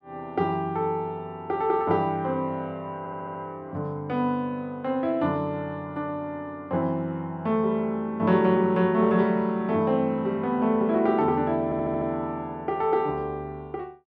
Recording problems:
audio stuttering; at 3 s and at 12 s

